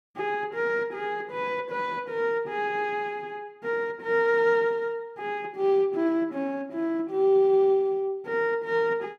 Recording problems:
none

